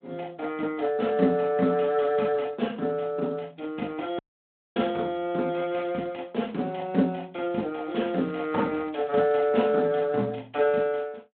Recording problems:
telephone audio; 170 Hz to 3.5 kHz, Speex
audio cutting out; at 4 s for 0.5 s
crackling; from 8 to 9.5 s; loose cable, SNR 27 dB

